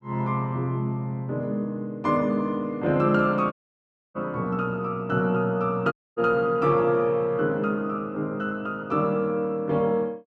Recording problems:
audio cutting out; at 3.5 s for 0.5 s and at 6 s

